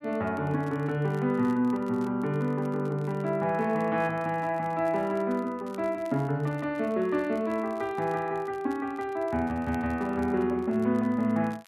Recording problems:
crackling; vinyl, SNR 29 dB

